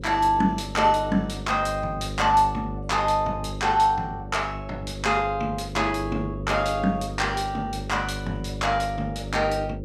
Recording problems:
electrical hum; 50 Hz, harmonics up to 550 Hz, SNR 10 dB

